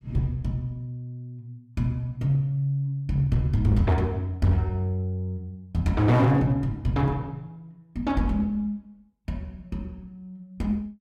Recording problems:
distorted audio; hard clipping, uneven, signal-to-distortion ratio 10 dB

